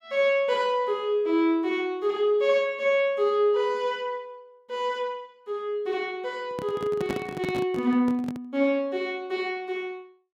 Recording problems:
handling noise; from 6.5 to 8.5 s; peak -1 dB vs average level

